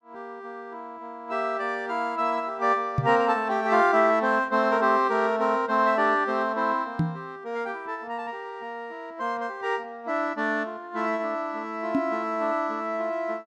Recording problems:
knock on the microphone; at 3 s, at 7 s and at 12 s; peak +4 dB vs average level

